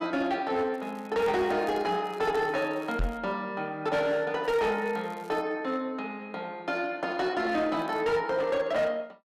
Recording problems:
distorted audio; hard clipping, signal-to-distortion ratio 11 dB
crackling; from 0.5 to 3 s, from 4.5 to 5.5 s and at 8 s; loose cable, SNR 27 dB
microphone bump; at 3 s; peak +1 dB vs average level

